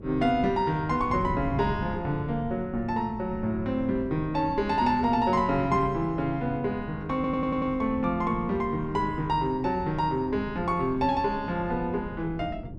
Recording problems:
wind on the microphone; below 220 Hz, SNR 12 dB
audio stuttering; at 7 s

